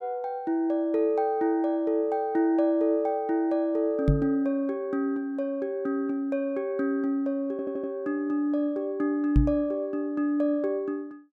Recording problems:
microphone bump; at 4 s and at 9.5 s; peak +8 dB vs average level
audio stuttering; at 7.5 s

